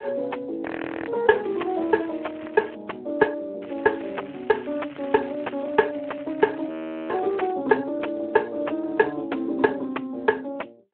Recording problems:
phone line; 240 Hz to 2.8 kHz, Speex
distorted audio; soft clipping, signal-to-distortion ratio 4 dB
audio freezing; at 0.5 s and at 6.5 s
crackle; from 1.5 to 3 s and from 3.5 to 7.5 s; loose cable, SNR 20 dB

